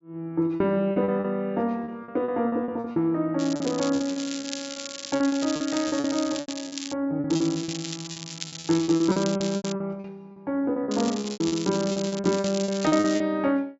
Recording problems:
treble missing; nothing above 8 kHz
packet loss; 15% of the sound replaced, filled with repeated pitch periods
crackle; from 3.5 to 7 s, from 7.5 to 9.5 s and from 11 to 13 s; loose cable, SNR 10 dB

